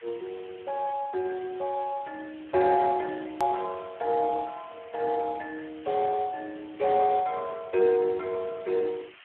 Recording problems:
telephone audio; 320 Hz to 2 kHz, Speex
hiss; SNR 22 dB
edit click; at 3.5 s

